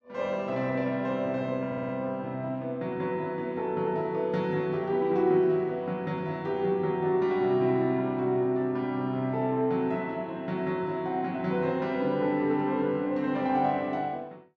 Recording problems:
stutter; at 1.5 s

